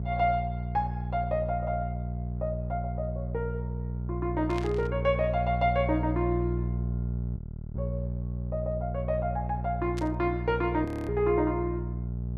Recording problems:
hum; 60 Hz, harmonics up to 420 Hz, SNR 3 dB
static burst; at 4.5 s and at 10 s; peak -6 dB vs average level
audio freezing; at 7.5 s and at 11 s

